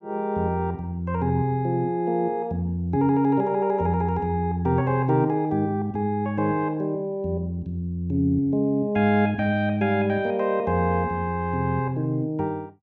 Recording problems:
none

